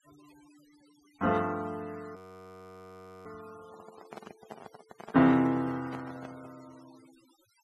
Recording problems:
noise reduction artefacts; signal-to-artefact ratio 28 dB
frozen audio; at 2 s for 1 s
handling noise; from 3.5 to 6.5 s; peak -11 dB vs average level

